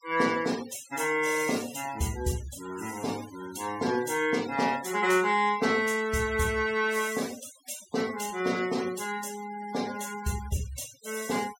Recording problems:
noise reduction artefacts; signal-to-artefact ratio 15 dB

